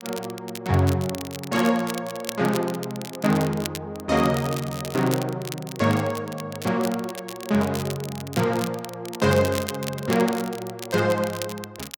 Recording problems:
crackling; vinyl, SNR 12 dB

